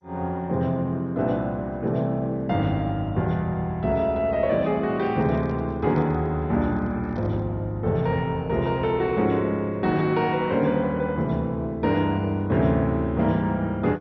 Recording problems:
lossy compression; MP2, log-spectral distance 2 dB, nothing above 5.5 kHz
handling noise; from 4.5 to 7.5 s; peak -10 dB vs average level

